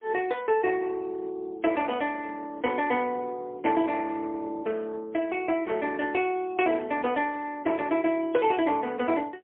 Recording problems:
phone line; 280 Hz to 3.4 kHz, AMR-NB, then MP3

